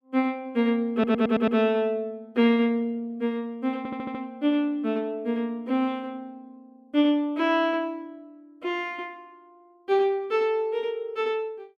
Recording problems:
stutter; at 1 s and at 4 s

